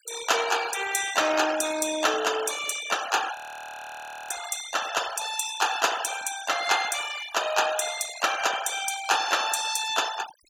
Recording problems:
noise reduction artefacts; signal-to-artefact ratio 11 dB
audio freezing; at 3.5 s for 1 s

